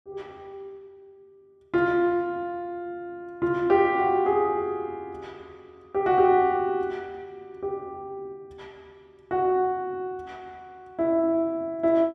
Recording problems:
none

